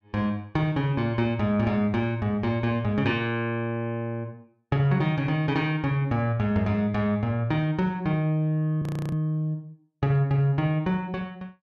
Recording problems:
frozen audio; at 9 s

